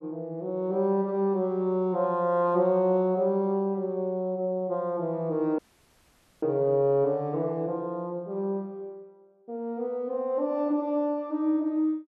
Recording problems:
audio cutting out; at 5.5 s for 1 s

